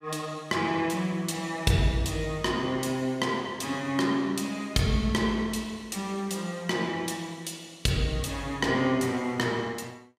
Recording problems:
none

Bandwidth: 15 kHz